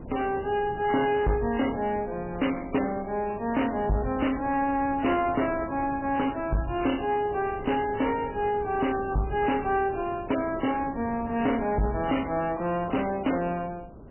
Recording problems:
codec artefacts; MP3, log-spectral distance 5 dB, nothing above 2.8 kHz
distortion; soft clipping, signal-to-distortion ratio 7 dB
wind noise; below 390 Hz, SNR 16 dB

